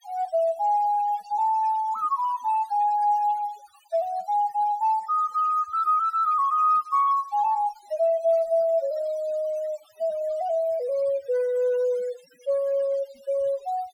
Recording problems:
denoising artefacts; signal-to-artefact ratio 23 dB

